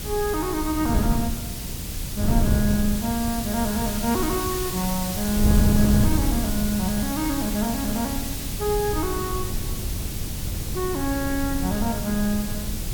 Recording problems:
background hiss; SNR 5 dB
wind noise; below 150 Hz, SNR 3 dB

